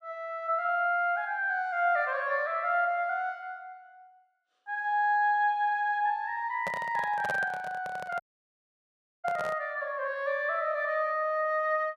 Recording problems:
handling noise; from 6.5 to 9.5 s; peak -3 dB vs average level
audio cutting out; at 8 s for 1 s

